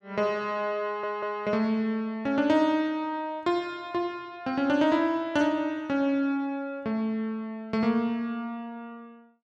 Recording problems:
audio stuttering; at 1 s

